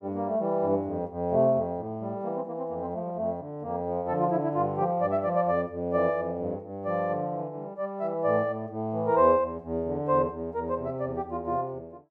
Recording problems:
none

